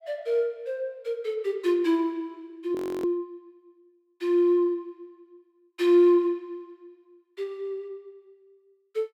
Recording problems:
frozen audio; at 3 s

